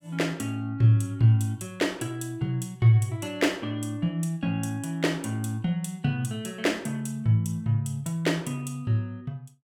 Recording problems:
none

